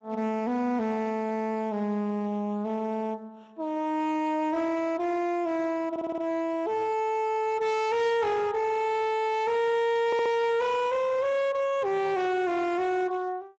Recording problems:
codec artefacts; Speex, log-spectral distance 3 dB, nothing above 7.6 kHz
distortion; hard clipping, signal-to-distortion ratio 7 dB
stutter; at 6 s and at 10 s

